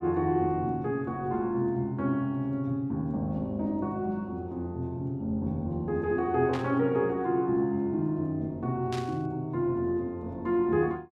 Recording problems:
static burst; at 6.5 s and at 9 s; peak -7 dB vs average level

